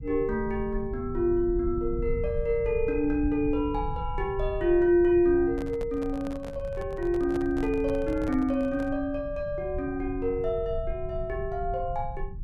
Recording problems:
low-frequency rumble; below 82 Hz, SNR 11 dB
microphone handling noise; from 5.5 to 9 s; peak -8 dB vs average level

